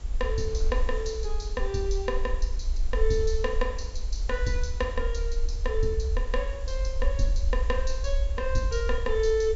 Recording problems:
treble cut off; nothing above 8 kHz
background hiss; SNR 22 dB
rumble; below 52 Hz, SNR 0 dB
wind noise; below 700 Hz, SNR 20 dB

